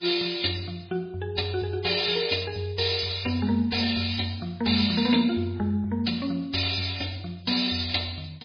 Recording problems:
codec artefacts; MP3, log-spectral distance 9 dB, nothing above 5 kHz

